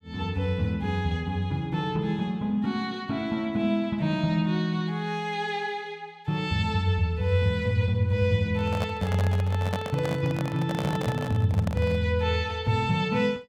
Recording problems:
handling noise; from 8.5 to 12 s; peak 0 dB vs average level

